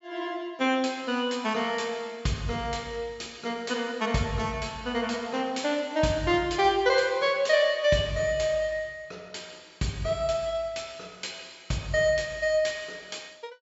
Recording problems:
treble missing; nothing above 7.6 kHz

